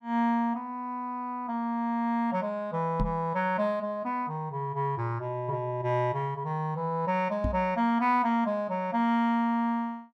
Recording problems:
knock on the microphone; at 3 s and at 7.5 s; peak +2 dB vs average level

